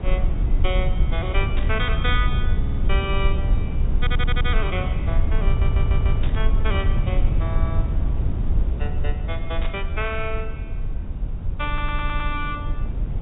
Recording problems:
low-pass filter; nothing above 4 kHz
rumble; below 76 Hz, SNR -5 dB
burst of static; at 1.5 s, at 6 s and at 9.5 s; peak -2 dB vs average level
stutter; 4 times, first at 2.5 s

